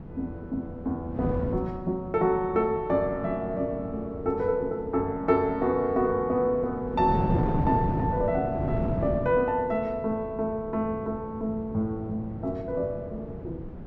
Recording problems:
wind noise; below 310 Hz, SNR 7 dB

